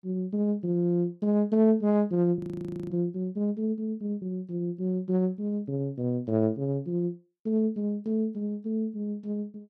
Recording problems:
frozen audio; at 2.5 s for 0.5 s

